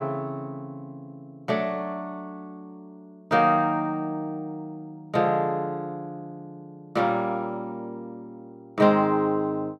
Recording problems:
none

